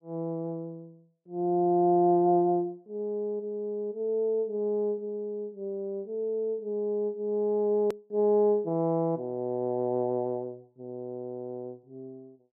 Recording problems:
click at an edit; at 8 s

